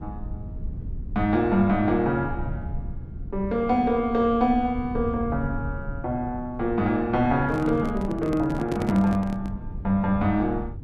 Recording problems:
low-frequency rumble; below 110 Hz, SNR 12 dB
microphone handling noise; from 7.5 to 9.5 s; peak +1 dB vs average level

